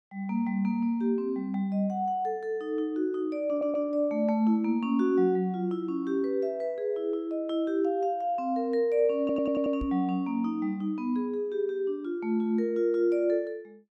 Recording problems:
audio stuttering; at 3.5 s and at 9 s
knock on the microphone; at 10 s; peak -2 dB vs average level

